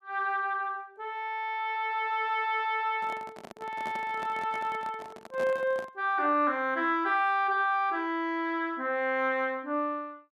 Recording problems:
microphone handling noise; from 3 to 6 s; peak -8 dB vs average level

